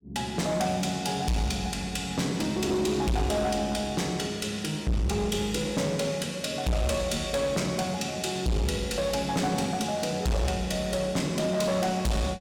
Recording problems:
distortion; hard clipping, uneven, signal-to-distortion ratio 6 dB

